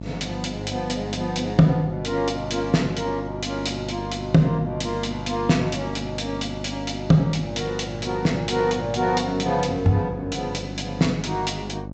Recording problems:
treble missing; nothing above 8 kHz
hum; 50 Hz, harmonics up to 950 Hz, SNR 10 dB

